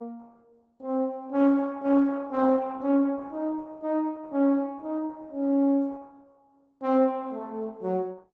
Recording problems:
lossy codec; Opus, log-spectral distance 2 dB

